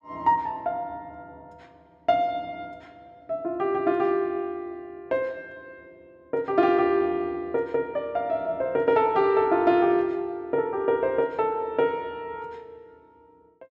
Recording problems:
none

